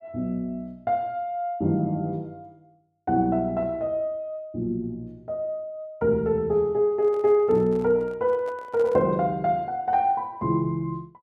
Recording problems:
handling noise; from 7 to 9 s; peak -11 dB vs average level

